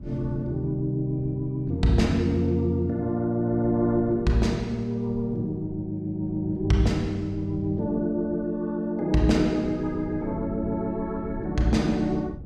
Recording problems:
wind on the microphone; below 150 Hz, SNR 16 dB

